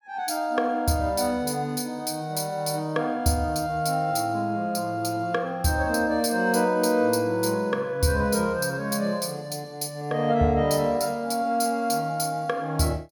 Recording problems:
none

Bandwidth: 18 kHz